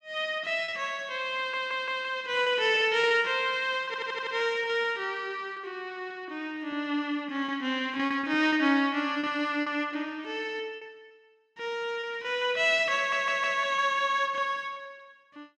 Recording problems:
lost packets; 7% of the sound replaced, filled with repeated pitch periods
audio stuttering; at 1.5 s, at 4 s and at 13 s

